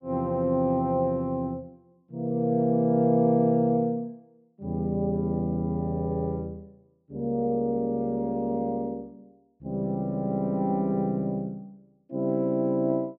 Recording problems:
none

